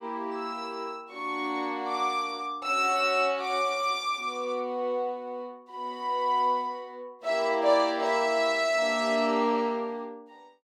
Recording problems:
none

